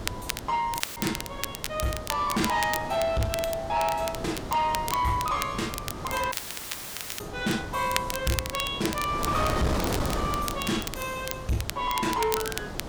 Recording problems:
distortion; soft clipping, signal-to-distortion ratio 11 dB
wind on the microphone; below 890 Hz, SNR 7 dB
crackling; vinyl, SNR 7 dB
audio cutting out; at 1 s and at 6.5 s for 1 s

